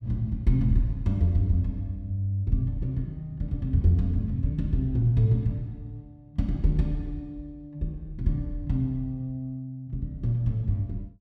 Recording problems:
none

